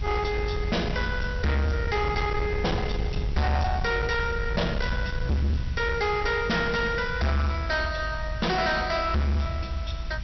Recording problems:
low-pass filter; nothing above 5.8 kHz
distorted audio; soft clipping, signal-to-distortion ratio 6 dB
hiss; slope 0 dB per octave, SNR 20 dB
rumble; below 130 Hz, SNR 5 dB

